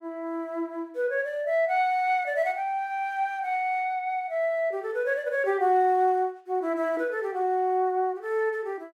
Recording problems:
none

